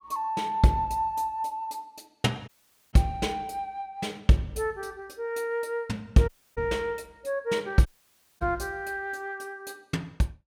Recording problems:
dropout; at 2.5 s, at 6.5 s and at 8 s for 0.5 s

